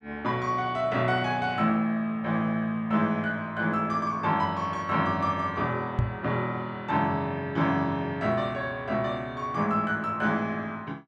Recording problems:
knock on the microphone; at 6 s; peak +5 dB vs average level

